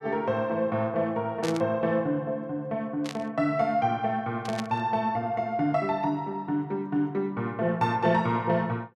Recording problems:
static burst; at 1.5 s, at 3 s and at 4.5 s; peak -5 dB vs average level

